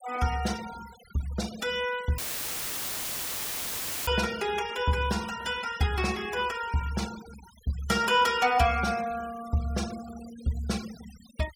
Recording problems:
denoising artefacts; signal-to-artefact ratio 16 dB
dropout; at 2 s for 2 s; filled with static

